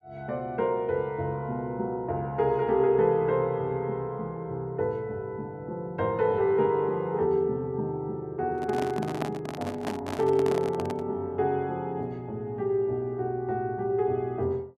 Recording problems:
handling noise; from 8.5 to 11 s; peak +1 dB vs average level

